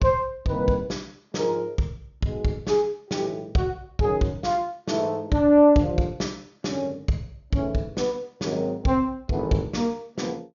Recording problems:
treble cut off; nothing above 7 kHz

